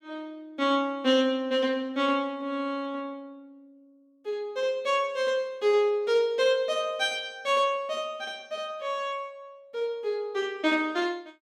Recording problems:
none

